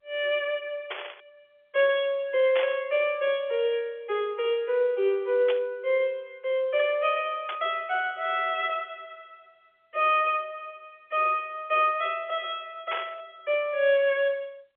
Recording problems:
telephone audio; 320 Hz to 3.5 kHz, G.711
burst of static; 5 times, first at 1 s; peak -2 dB vs average level

